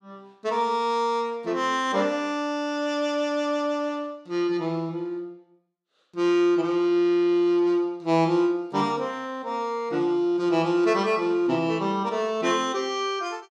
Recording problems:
none

